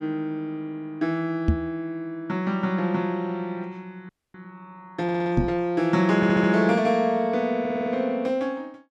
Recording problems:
microphone thump; at 1.5 s and at 5.5 s; peak +7 dB vs average level
frozen audio; at 4 s
stutter; at 5 s, at 6 s and at 7.5 s

